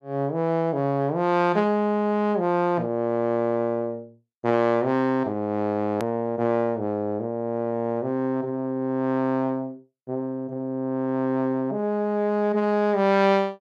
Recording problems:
edit click; at 6 s

